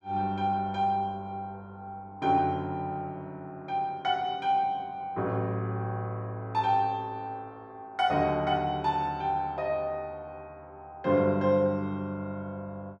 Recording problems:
none

